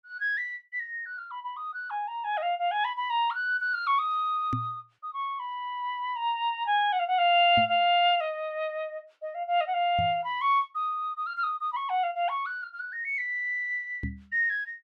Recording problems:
microphone bump; 4 times, first at 4.5 s; peak 0 dB vs average level

